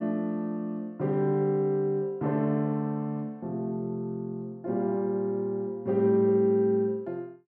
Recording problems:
none

